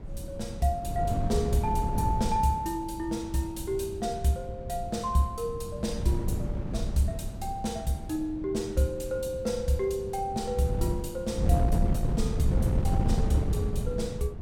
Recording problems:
wind on the microphone; below 160 Hz, SNR 2 dB

